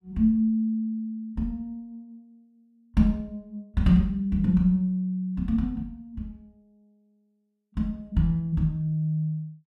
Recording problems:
none

